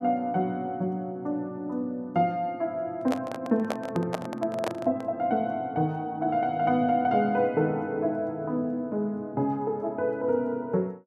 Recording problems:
microphone handling noise; from 3 to 5 s; peak +2 dB vs average level

